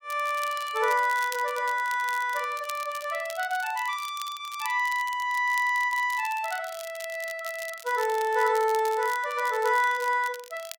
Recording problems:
crackle; vinyl, SNR 16 dB

